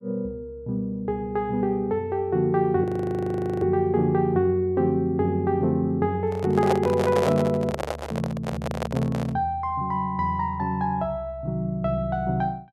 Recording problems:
frozen audio; at 3 s for 1 s
microphone handling noise; from 6 to 9.5 s; peak +3 dB vs average level

